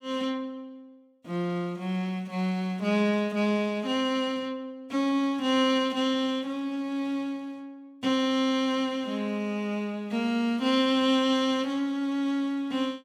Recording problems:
none

